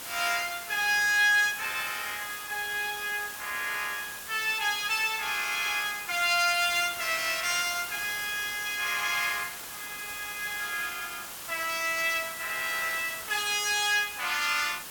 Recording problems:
hiss; SNR 10 dB

